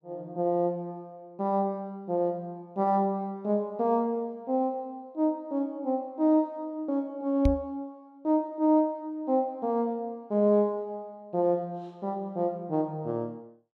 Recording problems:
knock on the microphone; at 7.5 s; peak +6 dB vs average level

